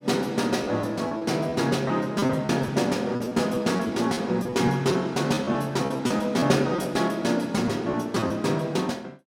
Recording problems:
lost packets; 9% of the sound replaced, filled with repeated pitch periods

